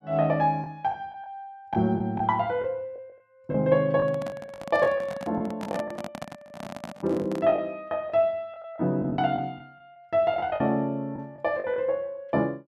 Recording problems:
lost packets; 9% of the sound replaced, filled with the last packet
handling noise; from 4 to 7.5 s; peak -4 dB vs average level

